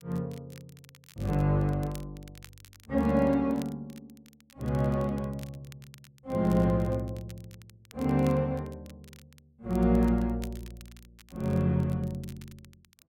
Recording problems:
crackle; vinyl, SNR 26 dB

